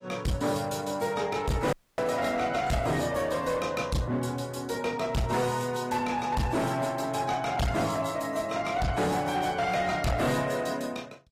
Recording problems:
lossy codec; AAC, log-spectral distance 4 dB
distortion; hard clipping, uneven, signal-to-distortion ratio 8 dB
audio cutting out; at 1.5 s

